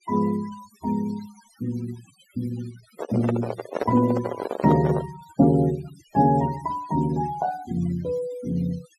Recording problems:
noise reduction artefacts; signal-to-artefact ratio 18 dB
microphone handling noise; from 3 to 5 s; peak +2 dB vs average level

